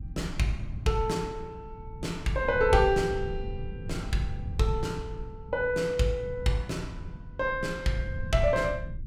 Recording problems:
low-frequency rumble; below 110 Hz, SNR 10 dB

